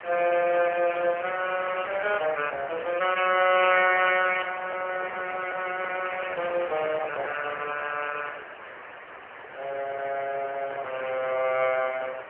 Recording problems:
telephone audio; 370 Hz to 2.9 kHz, AMR-NB
background hiss; SNR 13 dB
handling noise; from 4.5 to 7.5 s; peak -6 dB vs average level
crackling; at 6 s; loose cable, SNR 27 dB

